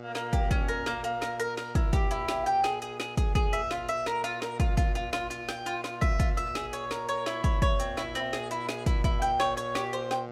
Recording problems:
electrical hum; 60 Hz, harmonics up to 2.9 kHz, SNR 14 dB

